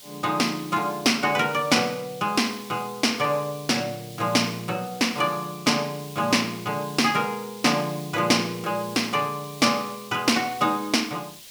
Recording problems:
hiss; SNR 18 dB

